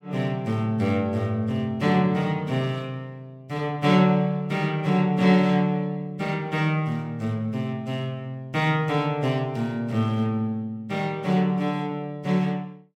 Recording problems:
none

